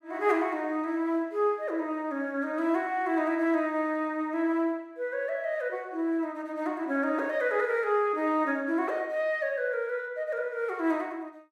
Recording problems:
none

